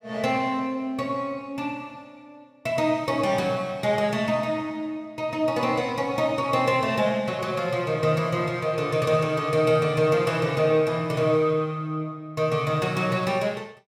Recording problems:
none

